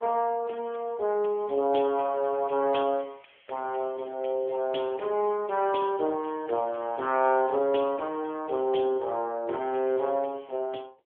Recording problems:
telephone audio; 300 Hz to 3.4 kHz, AMR-NB

